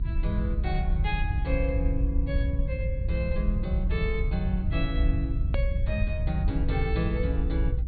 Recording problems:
treble cut off; nothing above 4.5 kHz
low-frequency rumble; below 82 Hz, SNR -4 dB
hard cut with a click; at 5.5 s

